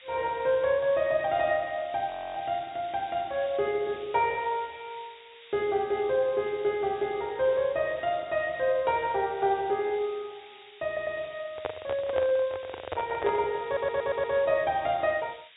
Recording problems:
low-pass filter; nothing above 4 kHz
background hiss; SNR 21 dB
frozen audio; at 2 s
stutter; at 11 s and at 14 s
handling noise; from 12 to 13 s; peak 0 dB vs average level

